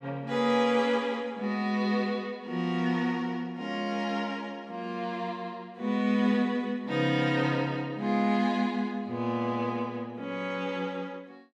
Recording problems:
none

